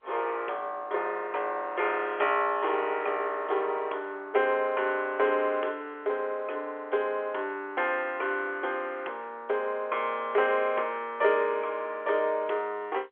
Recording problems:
phone line; 320 Hz to 3.4 kHz, G.711

